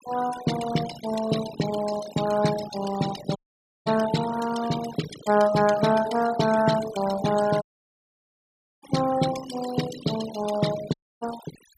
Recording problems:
noise reduction artefacts; signal-to-artefact ratio 11 dB
dropout; at 3.5 s for 0.5 s, at 7.5 s for 1 s and at 11 s

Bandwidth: 15 kHz